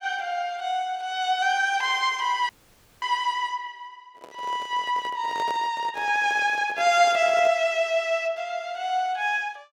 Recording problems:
audio cutting out; at 2.5 s for 0.5 s
handling noise; from 4 to 7.5 s; peak -8 dB vs average level

